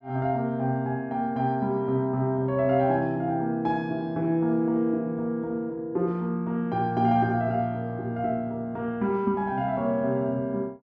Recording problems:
none

